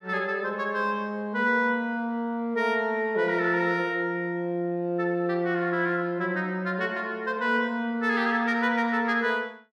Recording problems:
none

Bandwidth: 13.5 kHz